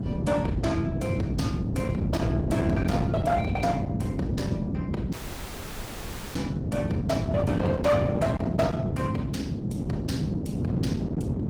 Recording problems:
lossy codec; Opus, log-spectral distance 2 dB, nothing above 19 kHz
distortion; hard clipping, signal-to-distortion ratio 12 dB
wind noise; below 270 Hz, SNR -2 dB
dropout; at 5 s for 1 s

